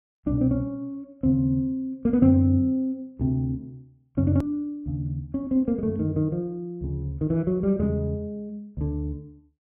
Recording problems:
treble missing; nothing above 3.4 kHz
hard cut with a click; at 4.5 s

